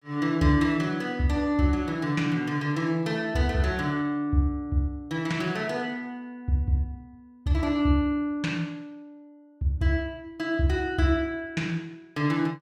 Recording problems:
none

